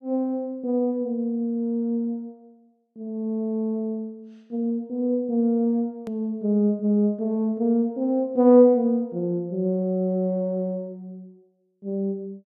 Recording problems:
edit click; at 6 s

